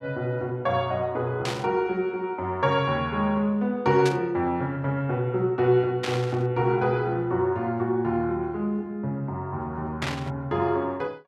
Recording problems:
burst of static; 4 times, first at 1.5 s; peak 0 dB vs average level

